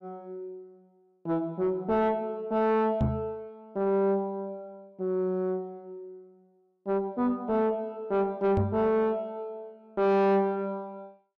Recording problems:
distortion; soft clipping, signal-to-distortion ratio 7 dB
knock on the microphone; at 3 s and at 8.5 s; peak +5 dB vs average level

